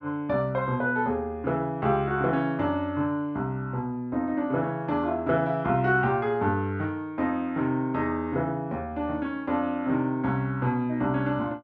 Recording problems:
none

